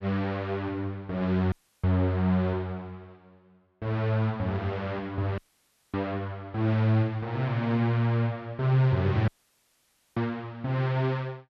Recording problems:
dropout; at 1.5 s, at 5.5 s for 0.5 s and at 9.5 s for 1 s

